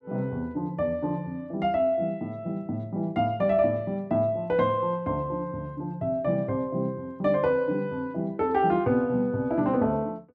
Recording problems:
none

